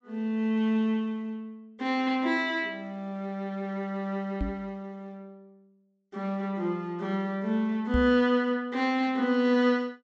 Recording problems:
low-pass filter; nothing above 8 kHz
microphone thump; at 4.5 s and at 8 s; peak +2 dB vs average level

